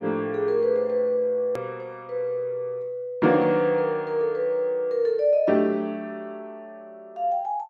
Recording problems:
click at an edit; at 1.5 s

